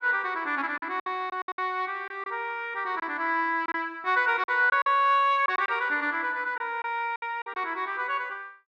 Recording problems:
packet loss; 8% of the sound replaced, filled with silence

